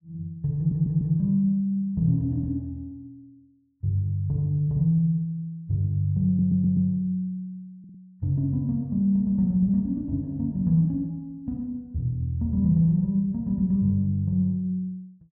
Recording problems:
stutter; 4 times, first at 0.5 s

